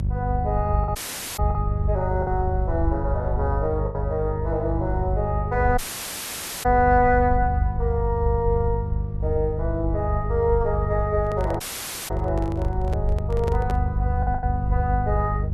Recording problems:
electrical hum; 50 Hz, harmonics up to 400 Hz, SNR 3 dB
low-frequency rumble; below 78 Hz, SNR 4 dB
packet loss; 2% of the sound replaced, filled with the last packet
dropout; at 1 s, at 6 s for 1 s and at 12 s for 0.5 s
handling noise; from 11 to 14 s; peak -3 dB vs average level

